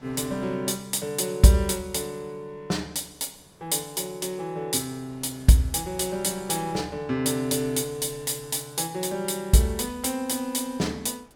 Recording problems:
wind noise; below 1.2 kHz, SNR 28 dB

